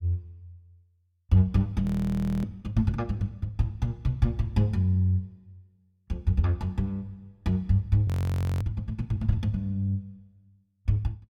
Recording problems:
frozen audio; at 2 s for 0.5 s and at 8 s for 0.5 s

